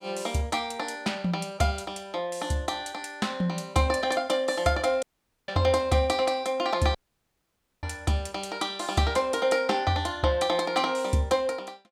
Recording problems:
dropout; at 5 s and at 7 s for 1 s

